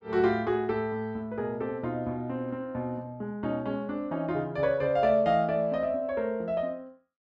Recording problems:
none

